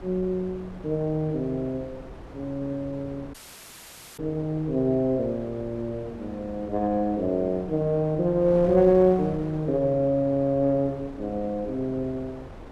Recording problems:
wind noise; below 610 Hz, SNR 17 dB
audio cutting out; at 3.5 s for 1 s

